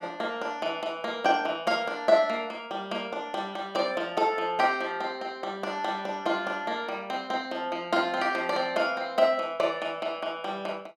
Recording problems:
none

